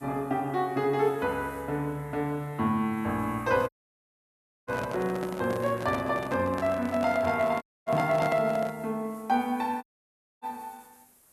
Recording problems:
hiss; slope -3 dB per octave, SNR 27 dB
microphone handling noise; from 3.5 to 9 s; peak -1 dB vs average level
audio cutting out; at 3.5 s for 1 s, at 7.5 s and at 10 s for 0.5 s

